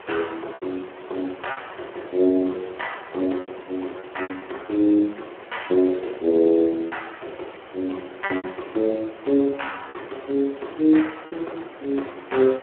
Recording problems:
telephone audio; 280 Hz to 3.3 kHz, Speex
background hiss; SNR 17 dB
packet loss; 6% of the sound replaced, filled with repeated pitch periods

